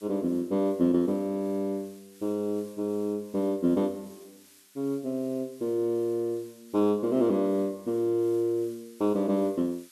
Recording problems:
hiss; slope +4 dB per octave, SNR 26 dB

